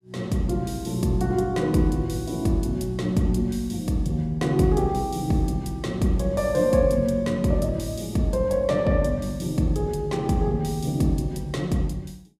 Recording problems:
none

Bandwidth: 15.5 kHz